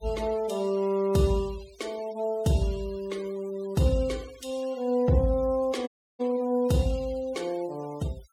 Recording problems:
denoising artefacts; signal-to-artefact ratio 21 dB
audio cutting out; at 6 s

